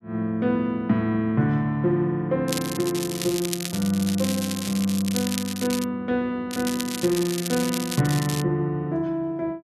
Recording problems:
crackle; from 2.5 to 6 s and from 6.5 to 8.5 s; loose cable, SNR 7 dB

